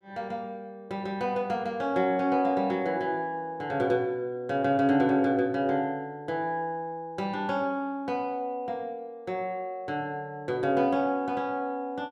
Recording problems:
none

